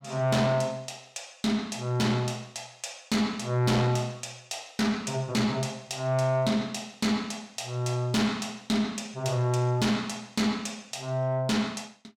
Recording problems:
distorted audio; soft clipping, signal-to-distortion ratio 10 dB

